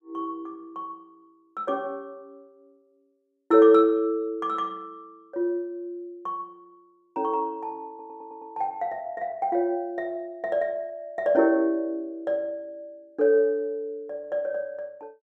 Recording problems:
stutter; at 8 s

